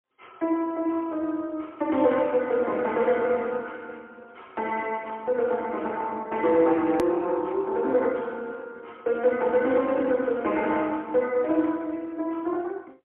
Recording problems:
telephone audio; 240 Hz to 3.2 kHz, AMR-NB, then MP3
edit click; at 7 s

